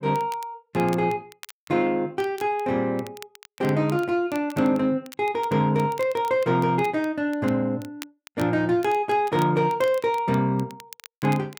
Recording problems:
crackling; vinyl, SNR 22 dB

